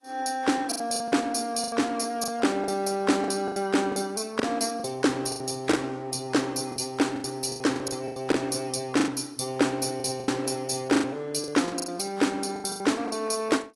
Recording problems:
codec artefacts; AAC, log-spectral distance 5 dB, nothing above 11.3 kHz
packet loss; 13% of the sound replaced, filled with the last packet

